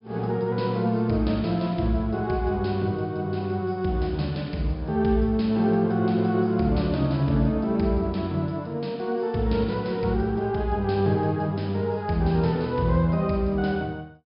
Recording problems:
low-pass filter; nothing above 5.5 kHz

